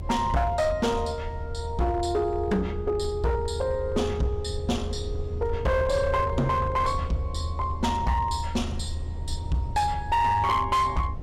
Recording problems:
distorted audio; hard clipping, signal-to-distortion ratio 11 dB
rumble; below 82 Hz, SNR 7 dB

